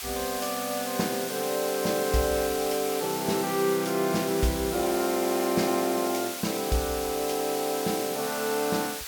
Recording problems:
hiss; slope +3 dB per octave, SNR 6 dB

